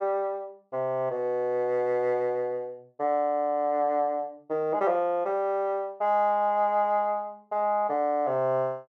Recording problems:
none

